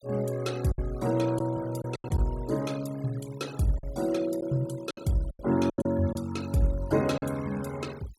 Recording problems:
denoising artefacts; signal-to-artefact ratio 18 dB
packet loss; 7% of the sound replaced, filled with silence

